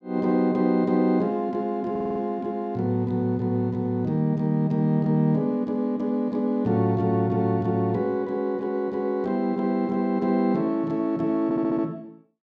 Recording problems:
audio stuttering; at 2 s and at 11 s

